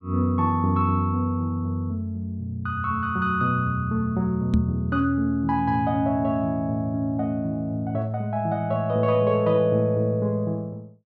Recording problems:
microphone thump; at 4.5 s; peak +7 dB vs average level

